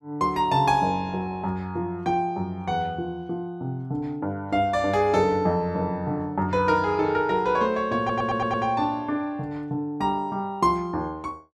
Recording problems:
stutter; at 8 s

